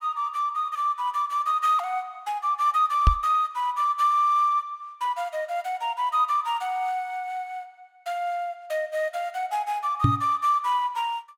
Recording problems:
microphone thump; at 3 s and at 10 s; peak +9 dB vs average level

